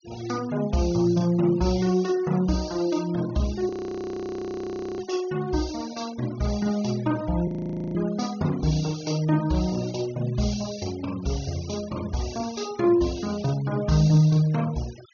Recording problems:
low-pass filter; nothing above 6.4 kHz
noise reduction artefacts; signal-to-artefact ratio 20 dB
frozen audio; at 3.5 s for 1.5 s and at 7.5 s

